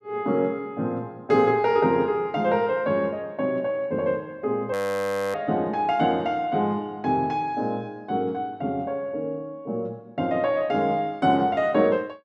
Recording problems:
frozen audio; at 4.5 s for 0.5 s

